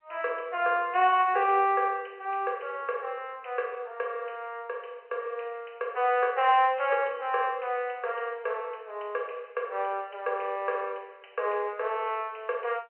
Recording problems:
telephone audio; 370 Hz to 3.1 kHz, G.711

